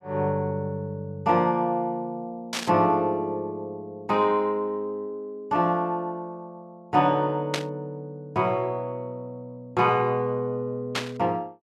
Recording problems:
static burst; at 2.5 s, at 7.5 s and at 11 s; peak +2 dB vs average level

